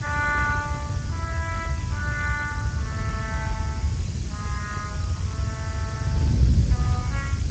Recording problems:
lossy compression; Speex, log-spectral distance 3 dB, nothing above 7.3 kHz
background hiss; slope +2 dB per octave, SNR 11 dB
wind on the microphone; below 130 Hz, SNR -4 dB

